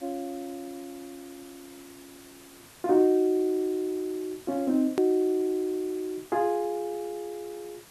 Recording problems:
hiss; slope -2 dB per octave, SNR 22 dB
hard cut with a click; at 5 s

